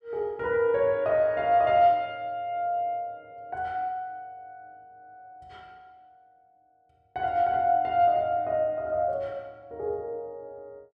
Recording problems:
none

